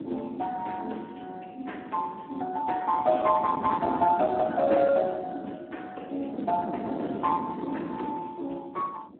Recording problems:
phone line; 220 Hz to 3.1 kHz, Speex
distorted audio; hard clipping, signal-to-distortion ratio 18 dB
wind noise; below 640 Hz, SNR 9 dB

